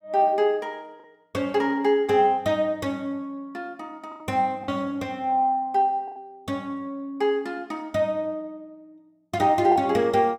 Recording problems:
packet loss; 3% of the sound replaced, filled with the last packet

